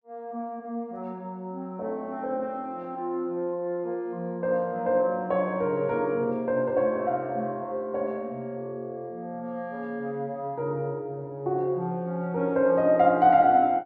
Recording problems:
none

